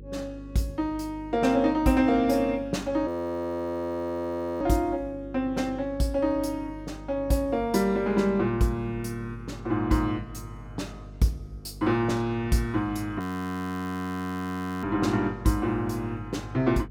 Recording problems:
hum; 50 Hz, harmonics up to 550 Hz, SNR 17 dB
frozen audio; at 3 s for 1.5 s and at 13 s for 1.5 s

